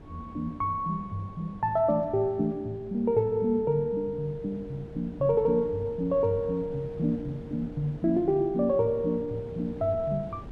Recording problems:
wind noise; below 330 Hz, SNR 18 dB

